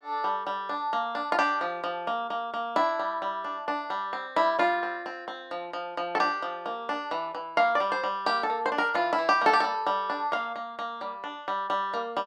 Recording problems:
none

